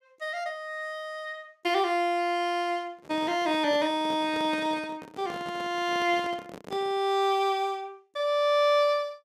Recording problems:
handling noise; from 3 to 7 s; peak -9 dB vs average level

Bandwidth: 14.5 kHz